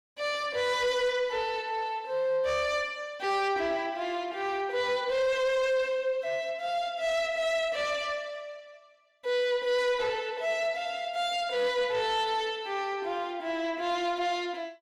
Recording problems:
distortion; soft clipping, signal-to-distortion ratio 11 dB

